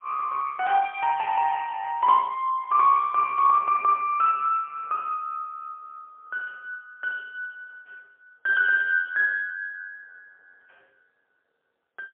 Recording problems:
phone line; 410 Hz to 3 kHz, AMR-NB, then MP3

